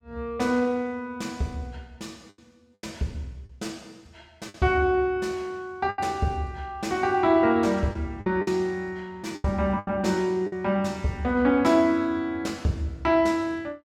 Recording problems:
packet loss; 4% of the sound replaced, filled with the last packet

